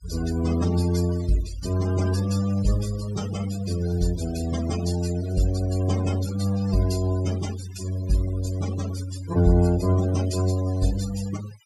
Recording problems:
denoising artefacts; signal-to-artefact ratio 13 dB

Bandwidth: 14.5 kHz